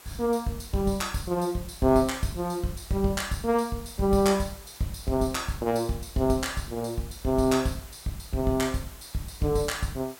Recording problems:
hiss; slope -2 dB per octave, SNR 19 dB

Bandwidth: 16.5 kHz